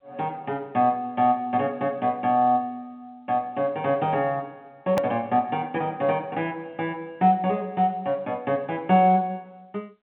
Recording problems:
phone line; 260 Hz to 3.5 kHz, G.711
hard cut with a click; at 5 s

